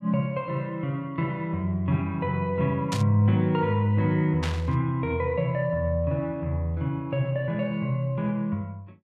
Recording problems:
static burst; at 3 s and at 4.5 s; peak -2 dB vs average level

